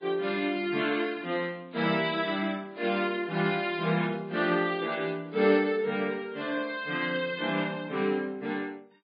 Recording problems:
codec artefacts; MP3, log-spectral distance 2 dB, nothing above 4.2 kHz

